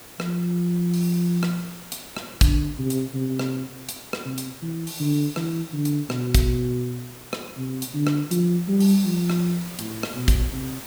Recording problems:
hiss; slope -3 dB per octave, SNR 16 dB

